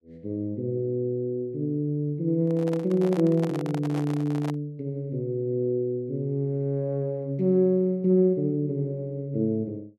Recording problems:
microphone handling noise; from 2.5 to 4.5 s; peak -6 dB vs average level

